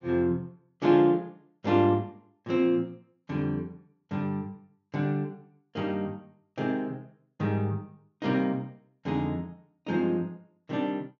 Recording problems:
treble missing; nothing above 7.1 kHz

